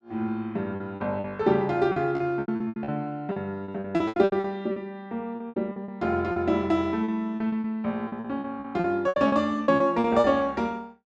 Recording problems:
packet loss; 16% of the sound replaced, filled with repeated pitch periods

